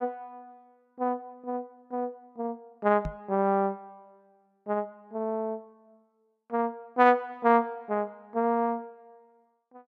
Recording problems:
microphone thump; at 3 s; peak -3 dB vs average level

